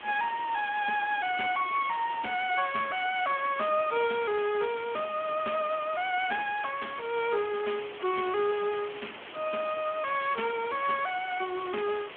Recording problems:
telephone audio; 300 Hz to 3.3 kHz, Speex
hiss; SNR 13 dB

